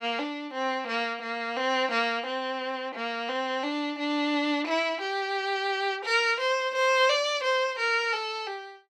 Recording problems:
none

